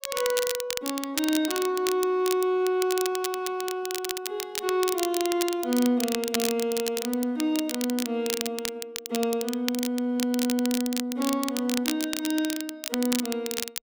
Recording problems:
crackle; vinyl, SNR 5 dB

